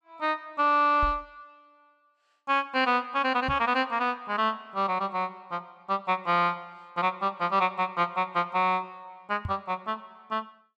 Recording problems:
knock on the microphone; at 1 s, at 3.5 s and at 9.5 s; peak -3 dB vs average level

